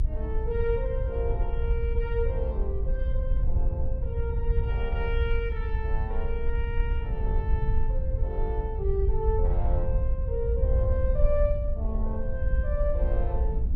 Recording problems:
electrical hum; 50 Hz, harmonics up to 1 kHz, SNR 20 dB
rumble; below 60 Hz, SNR -1 dB
wind on the microphone; below 72 Hz, SNR -3 dB

